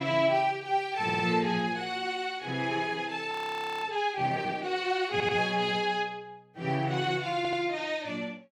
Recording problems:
audio stuttering; at 1 s, at 5 s and at 7.5 s
audio freezing; at 3.5 s for 0.5 s

